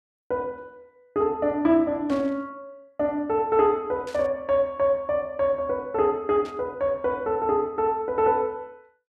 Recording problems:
static burst; at 2 s, at 4 s and at 6.5 s; peak -14 dB vs average level

